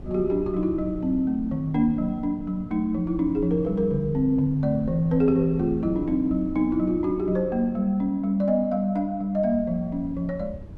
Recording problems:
wind on the microphone; below 150 Hz, SNR 17 dB

